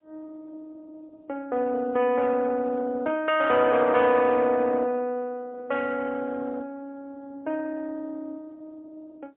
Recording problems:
phone line; 260 Hz to 3.4 kHz, AMR-NB, then MP3

